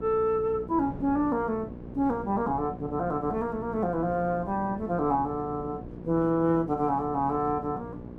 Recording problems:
hum; 60 Hz, harmonics up to 1.1 kHz, SNR 14 dB
wind noise; below 360 Hz, SNR 17 dB

